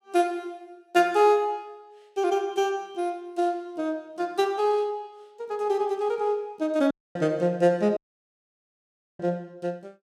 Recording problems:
dropout; at 7 s and at 8 s for 1 s

